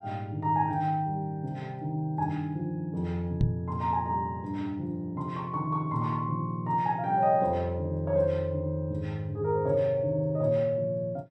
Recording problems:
microphone thump; at 3.5 s; peak +7 dB vs average level

